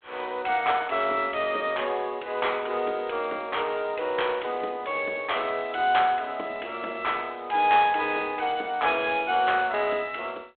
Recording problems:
telephone audio; 260 Hz to 3.7 kHz, G.726

